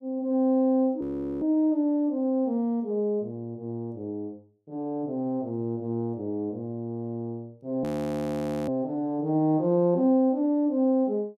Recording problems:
audio freezing; at 1 s and at 8 s for 1 s

